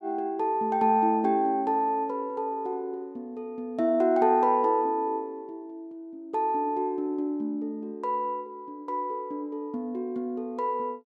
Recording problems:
none

